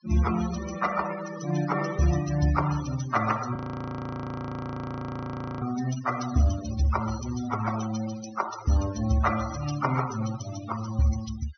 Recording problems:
treble cut off; nothing above 6.3 kHz
denoising artefacts; signal-to-artefact ratio 11 dB
audio freezing; at 3.5 s for 2 s

